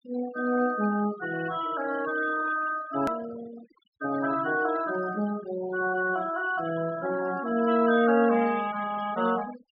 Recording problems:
treble missing; nothing above 5.5 kHz
denoising artefacts; signal-to-artefact ratio 14 dB
click at an edit; at 3 s

